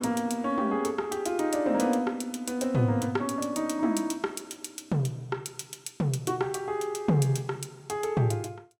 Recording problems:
none

